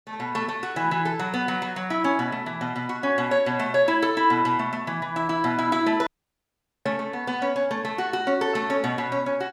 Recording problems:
dropout; at 6 s for 1 s

